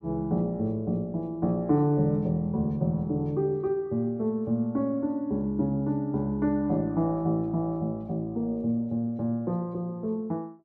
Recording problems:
none

